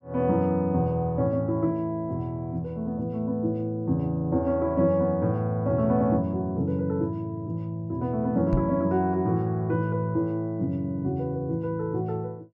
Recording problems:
microphone bump; at 8.5 s; peak +3 dB vs average level

